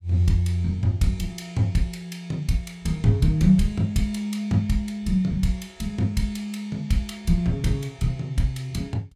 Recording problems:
none

